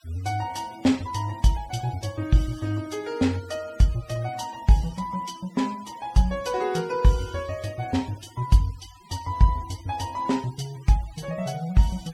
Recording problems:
denoising artefacts; signal-to-artefact ratio 22 dB

